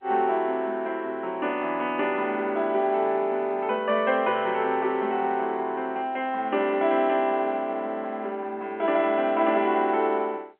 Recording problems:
telephone audio; 240 Hz to 3.3 kHz, G.711

